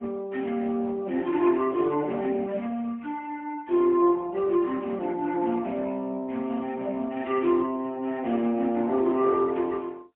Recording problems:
phone line; 190 Hz to 3.1 kHz, AMR-NB, then MP3

